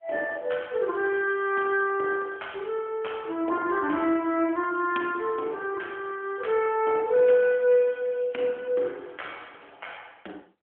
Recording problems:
telephone audio; 240 Hz to 3.3 kHz, AMR-NB

